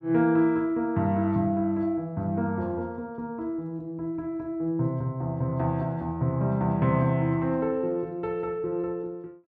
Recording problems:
none

